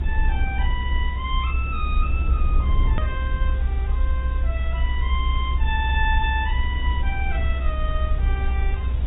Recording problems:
treble cut off; nothing above 3.2 kHz
lossy codec; AAC, log-spectral distance 2 dB
hiss; SNR 16 dB
low-frequency rumble; below 64 Hz, SNR -6 dB
edit click; at 3 s

